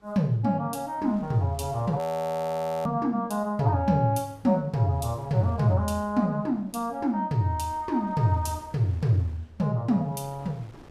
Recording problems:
wind on the microphone; below 810 Hz, SNR 26 dB
frozen audio; at 2 s for 1 s

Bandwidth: 15 kHz